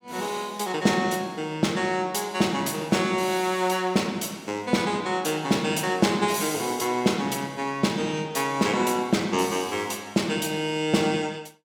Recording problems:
none

